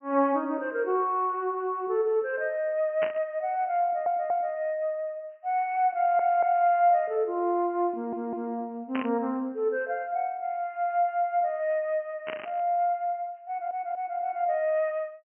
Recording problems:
treble cut off; nothing above 3 kHz
static burst; at 3 s, at 9 s and at 12 s; peak -3 dB vs average level
stutter; 4 times, first at 4 s

